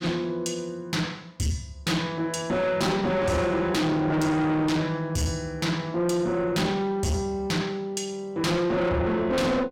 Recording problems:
distortion; soft clipping, signal-to-distortion ratio 6 dB

